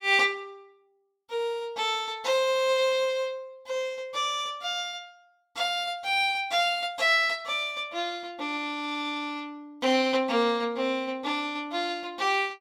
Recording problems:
none

